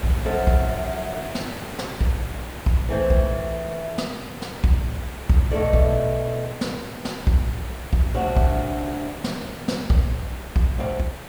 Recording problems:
background hiss; SNR 12 dB

